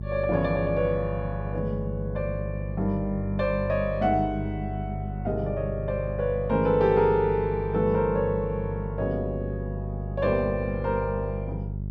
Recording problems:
mains hum; 50 Hz, harmonics up to 400 Hz, SNR 6 dB

